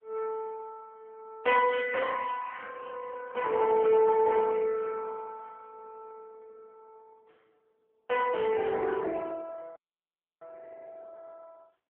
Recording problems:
telephone audio; 150 Hz to 2.5 kHz, AMR-NB
dropout; at 10 s for 0.5 s

